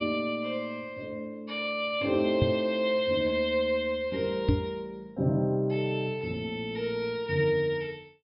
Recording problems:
low-pass filter; nothing above 5.5 kHz
knock on the microphone; at 2.5 s and at 4.5 s; peak +8 dB vs average level

